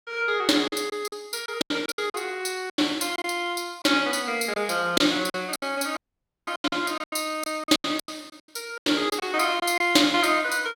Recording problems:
lost packets; 12% of the sound replaced, filled with silence
audio cutting out; at 6 s for 0.5 s

